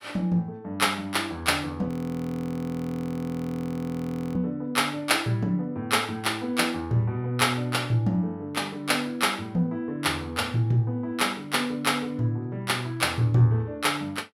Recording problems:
audio freezing; at 2 s for 2.5 s

